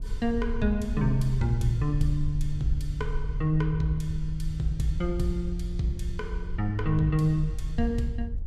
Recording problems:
wind noise; below 60 Hz, SNR 6 dB

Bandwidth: 15 kHz